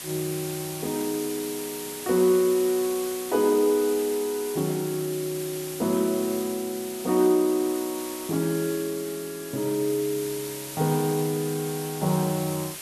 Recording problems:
hiss; slope 0 dB per octave, SNR 10 dB

